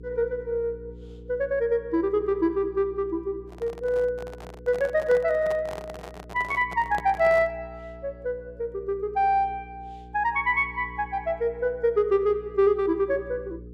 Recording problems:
hum; 60 Hz, harmonics up to 480 Hz, SNR 20 dB
handling noise; from 3.5 to 7.5 s; peak -6 dB vs average level

